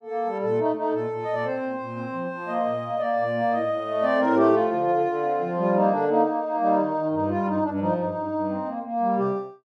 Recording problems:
none

